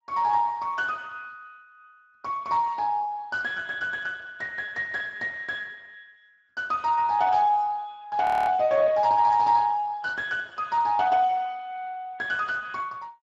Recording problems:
codec artefacts; Speex, log-spectral distance 3 dB, nothing above 13.1 kHz
frozen audio; at 8 s

